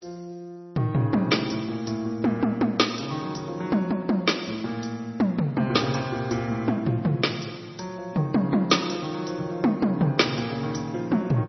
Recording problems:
codec artefacts; MP3, log-spectral distance 5 dB, nothing above 5.8 kHz

